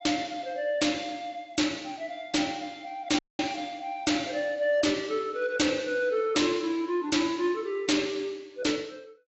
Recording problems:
codec artefacts; AAC, log-spectral distance 3 dB, nothing above 7.8 kHz
distortion; hard clipping, signal-to-distortion ratio 10 dB
audio cutting out; at 3 s

